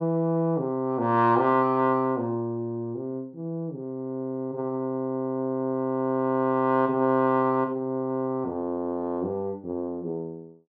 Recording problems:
none

